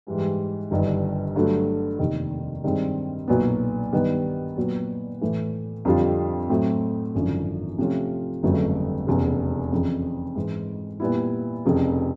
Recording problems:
none

